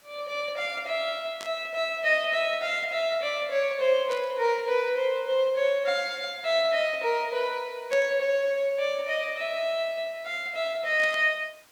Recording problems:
hiss; slope -1 dB per octave, SNR 29 dB
burst of static; 4 times, first at 1.5 s; peak -8 dB vs average level

